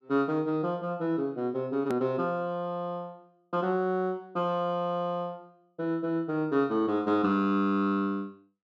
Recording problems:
low-pass filter; nothing above 8 kHz
edit click; at 2 s

